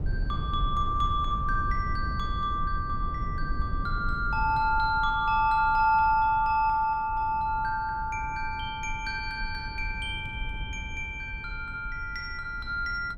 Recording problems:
low-frequency rumble; below 84 Hz, SNR 9 dB

